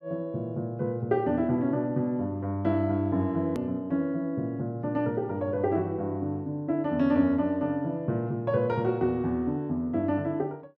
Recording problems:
hard cut with a click; at 3.5 s

